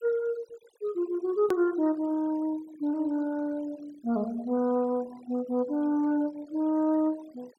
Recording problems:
noise reduction artefacts; signal-to-artefact ratio 23 dB
hard cut with a click; at 1.5 s

